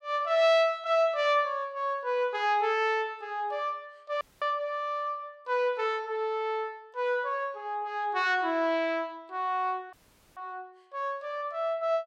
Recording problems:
audio cutting out; at 4 s and at 10 s

